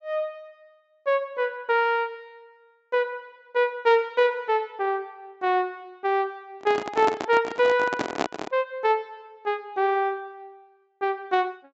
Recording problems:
treble cut off; nothing above 7.7 kHz
microphone handling noise; from 6.5 to 8.5 s; peak +4 dB vs average level

